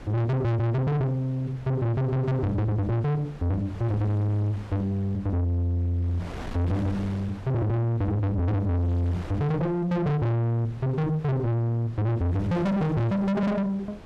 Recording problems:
distortion; soft clipping, signal-to-distortion ratio 6 dB
wind noise; below 720 Hz, SNR 17 dB

